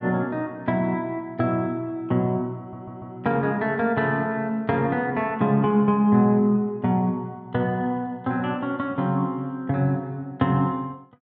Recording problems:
stutter; at 2.5 s

